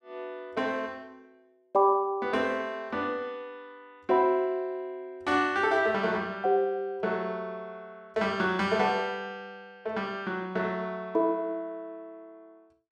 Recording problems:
none

